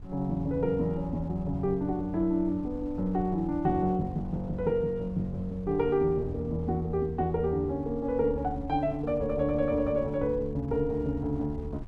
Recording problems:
wind noise; below 110 Hz, SNR 15 dB

